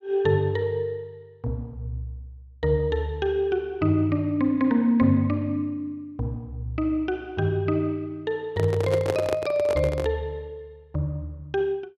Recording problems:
microphone handling noise; from 8.5 to 10 s; peak +3 dB vs average level

